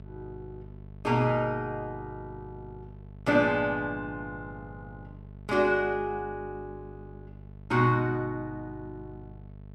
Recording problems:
hum; 50 Hz, harmonics up to 850 Hz, SNR 18 dB

